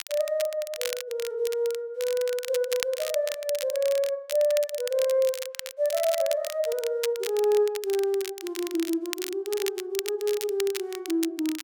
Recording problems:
crackling; vinyl, SNR 10 dB

